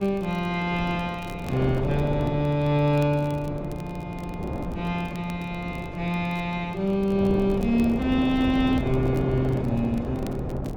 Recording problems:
wind noise; below 450 Hz, SNR 7 dB
crackle; vinyl, SNR 27 dB

